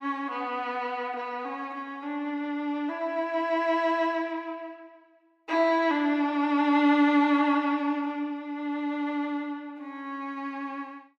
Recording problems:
none

